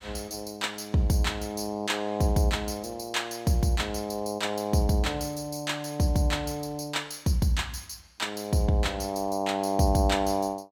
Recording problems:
none

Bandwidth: 17.5 kHz